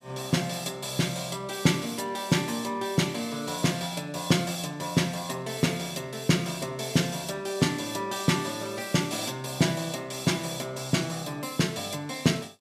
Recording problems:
none

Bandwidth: 14.5 kHz